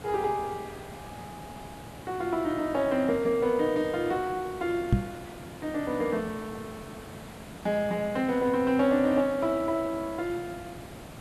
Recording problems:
hiss; slope -6 dB per octave, SNR 15 dB
microphone bump; at 5 s; peak +9 dB vs average level

